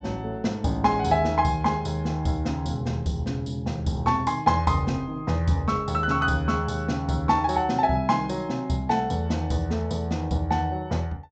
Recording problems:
treble missing; nothing above 8 kHz

